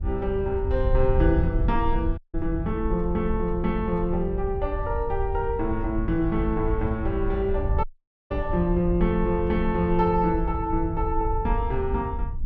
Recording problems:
wind noise; below 72 Hz, SNR 4 dB
dropout; at 2 s and at 8 s

